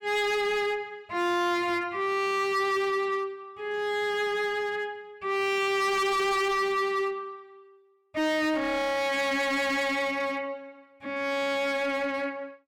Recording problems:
distorted audio; hard clipping, signal-to-distortion ratio 7 dB

